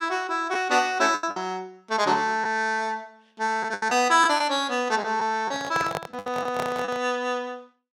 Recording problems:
lost packets; 7% of the sound replaced, filled with the last packet
handling noise; from 5.5 to 7 s; peak -1 dB vs average level

